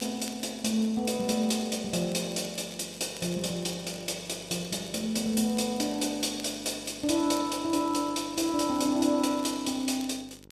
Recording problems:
mains hum; 50 Hz, harmonics up to 1.1 kHz, SNR 25 dB
crackling; vinyl, SNR 21 dB

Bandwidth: 13.5 kHz